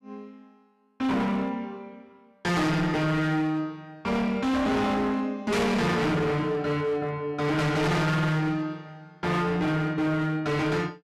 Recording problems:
distorted audio; hard clipping, signal-to-distortion ratio 6 dB

